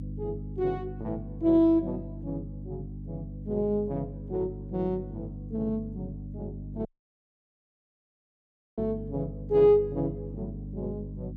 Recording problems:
mains hum; 50 Hz, harmonics up to 300 Hz, SNR 11 dB
dropout; at 7 s for 2 s

